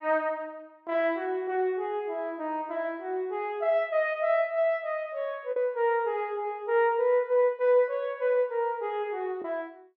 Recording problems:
lost packets; 0.6% of the sound replaced, filled with the last packet

